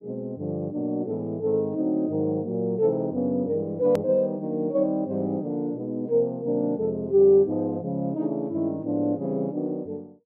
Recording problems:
hard cut with a click; at 4 s

